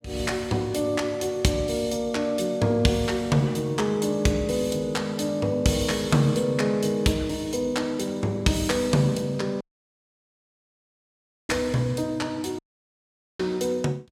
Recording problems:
audio cutting out; at 9.5 s for 2 s and at 13 s for 1 s

